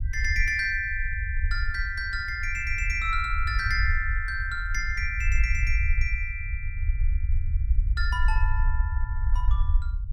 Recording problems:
low-frequency rumble; below 62 Hz, SNR 1 dB

